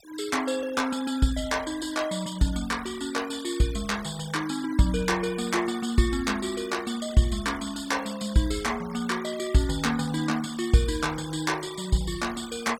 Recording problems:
noise reduction artefacts; signal-to-artefact ratio 17 dB

